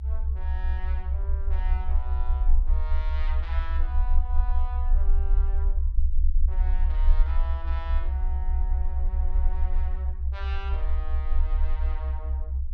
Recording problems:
low-frequency rumble; below 64 Hz, SNR -15 dB

